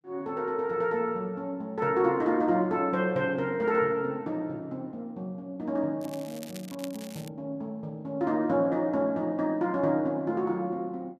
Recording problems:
crackle; from 6 to 7.5 s; loose cable, SNR 18 dB

